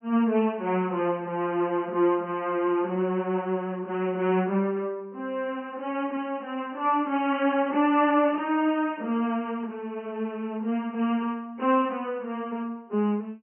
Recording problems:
treble cut off; nothing above 3 kHz

